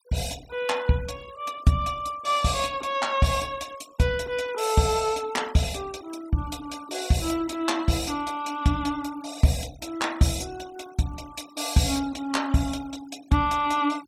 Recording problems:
denoising artefacts; signal-to-artefact ratio 20 dB

